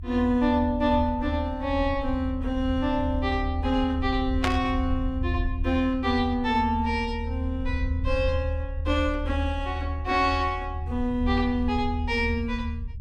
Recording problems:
rumble; below 78 Hz, strongest tone 76 Hz, SNR 5 dB
static burst; at 4.5 s; peak +4 dB vs average level

